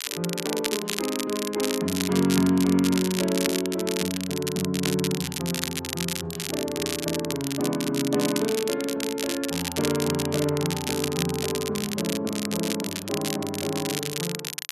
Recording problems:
crackling; vinyl, SNR 4 dB

